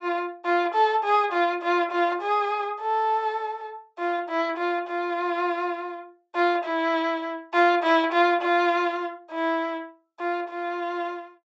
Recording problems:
treble cut off; nothing above 8 kHz

